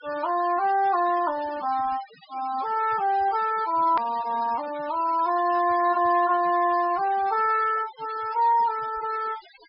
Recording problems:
treble missing; nothing above 5.5 kHz
noise reduction artefacts; signal-to-artefact ratio 20 dB
hard cut with a click; at 4 s

